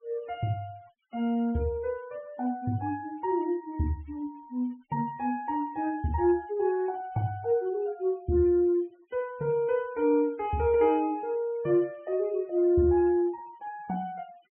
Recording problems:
low-pass filter; nothing above 3.2 kHz
noise reduction artefacts; signal-to-artefact ratio 28 dB

